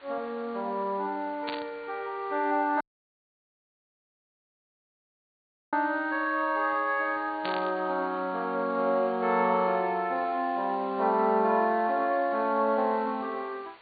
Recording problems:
treble cut off; nothing above 4.6 kHz
background hiss; SNR 25 dB
static burst; at 1.5 s and at 7.5 s; peak -4 dB vs average level
dropout; at 3 s for 3 s

